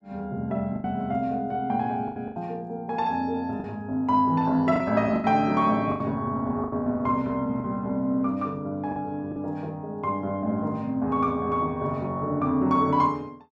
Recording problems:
lost packets; 5% of the sound replaced, filled with the last packet

